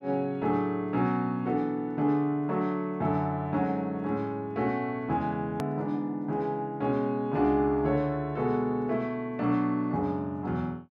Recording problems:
click at an edit; at 5.5 s

